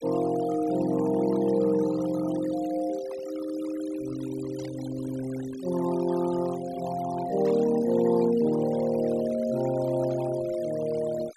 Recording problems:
denoising artefacts; signal-to-artefact ratio 18 dB
static burst; 4 times, first at 3 s; peak -20 dB vs average level

